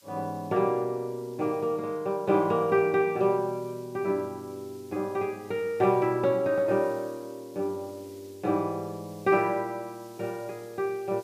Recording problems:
hiss; SNR 27 dB

